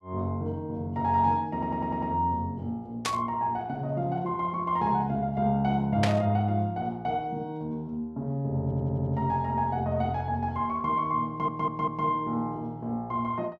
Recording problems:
stutter; at 1.5 s, at 8.5 s and at 11 s
static burst; at 3 s and at 6 s; peak +4 dB vs average level

